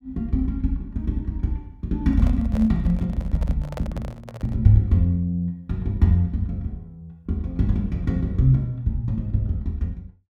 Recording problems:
handling noise; from 2 to 4.5 s; peak -7 dB vs average level

